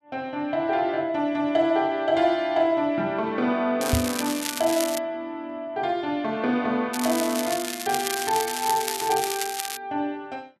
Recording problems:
crackle; from 4 to 5 s and from 7 to 10 s; loose cable, SNR 5 dB
microphone thump; at 4 s; peak +5 dB vs average level

